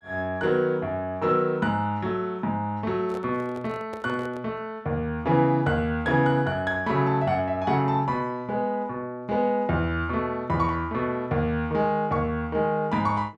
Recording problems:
handling noise; from 3 to 4.5 s; peak -10 dB vs average level

